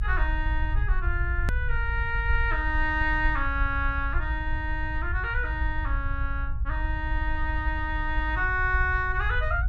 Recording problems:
low-frequency rumble; below 62 Hz, SNR 2 dB
hard cut with a click; at 1.5 s

